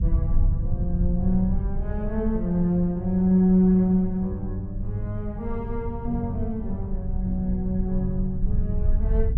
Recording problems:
rumble; below 80 Hz, SNR 5 dB

